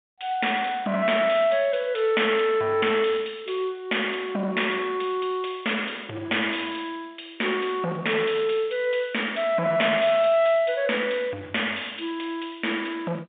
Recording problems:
telephone audio; 280 Hz to 3.6 kHz, G.711
distorted audio; soft clipping, signal-to-distortion ratio 11 dB

